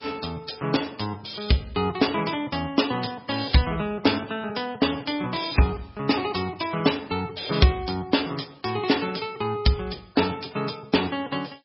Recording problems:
lossy compression; MP3, log-spectral distance 7 dB, nothing above 5.5 kHz

